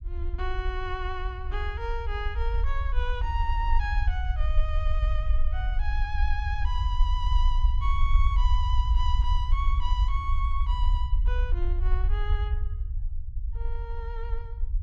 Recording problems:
rumble; below 58 Hz, SNR -7 dB

